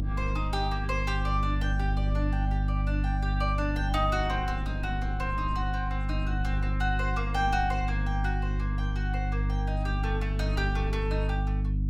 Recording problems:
hum; 50 Hz, harmonics up to 300 Hz, SNR -3 dB
wind noise; below 230 Hz, SNR 14 dB

